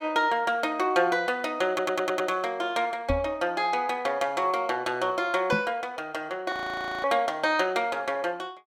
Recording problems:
audio stuttering; at 1.5 s
microphone bump; at 3 s and at 5.5 s; peak +1 dB vs average level
audio freezing; at 6.5 s for 0.5 s

